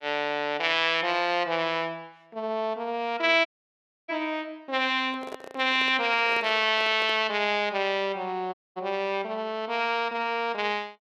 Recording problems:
dropout; at 3.5 s for 0.5 s and at 8.5 s
handling noise; from 5 to 7 s; peak -8 dB vs average level

